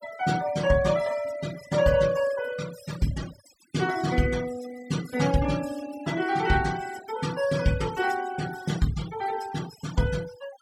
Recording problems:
noise reduction artefacts; signal-to-artefact ratio 16 dB

